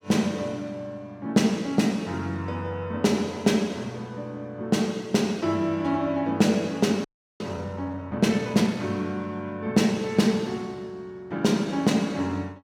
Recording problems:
audio freezing; at 7 s

